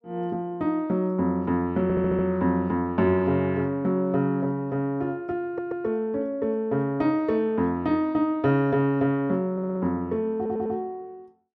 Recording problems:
audio stuttering; 4 times, first at 2 s

